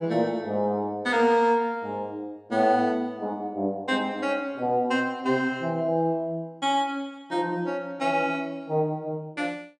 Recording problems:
none

